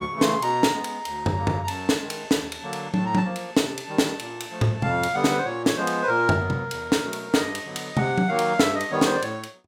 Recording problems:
none

